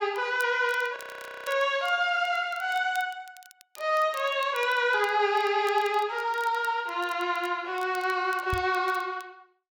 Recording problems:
crackle; vinyl, SNR 23 dB
frozen audio; at 1 s for 0.5 s
knock on the microphone; at 8.5 s; peak -2 dB vs average level

